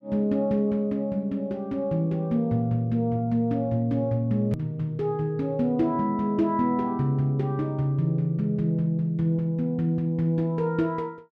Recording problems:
click at an edit; at 4.5 s

